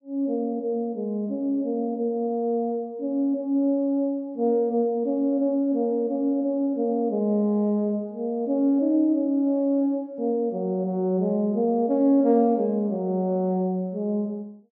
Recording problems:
treble cut off; nothing above 8 kHz

